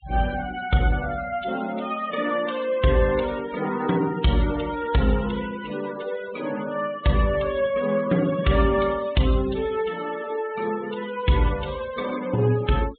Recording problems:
treble missing; nothing above 4 kHz
denoising artefacts; signal-to-artefact ratio 16 dB

